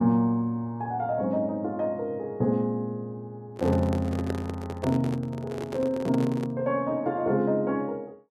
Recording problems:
handling noise; from 3.5 to 6.5 s; peak -1 dB vs average level

